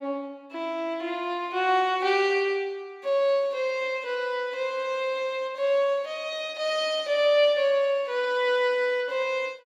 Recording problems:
none

